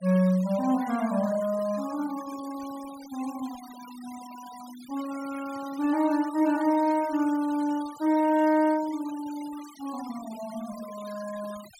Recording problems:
denoising artefacts; signal-to-artefact ratio 19 dB

